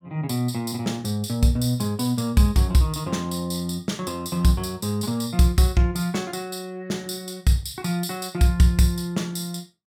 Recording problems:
none

